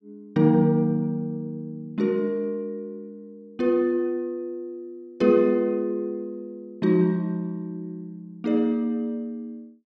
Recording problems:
none

